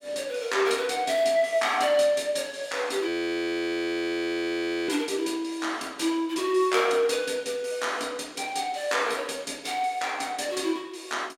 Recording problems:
audio freezing; at 3 s for 2 s

